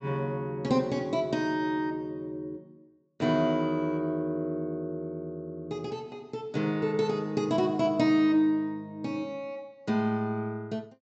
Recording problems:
low-pass filter; nothing above 8 kHz

